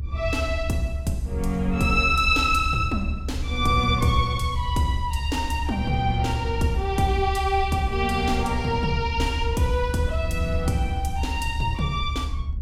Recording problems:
rumble; below 76 Hz, SNR 5 dB

